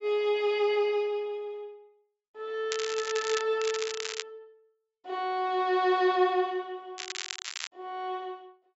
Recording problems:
treble cut off; nothing above 8 kHz
crackling; at 2.5 s, at 3.5 s and at 7 s; loose cable, SNR 7 dB

